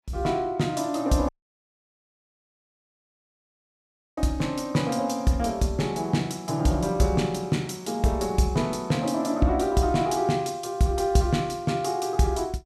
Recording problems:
dropout; at 1.5 s for 3 s

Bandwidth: 14.5 kHz